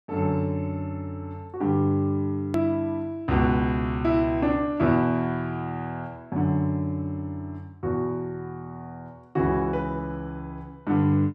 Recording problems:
click at an edit; at 2.5 s

